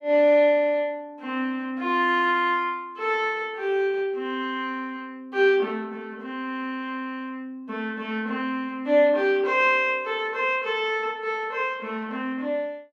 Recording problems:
none

